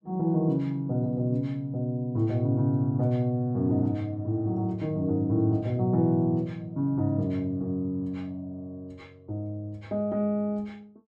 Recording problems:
none

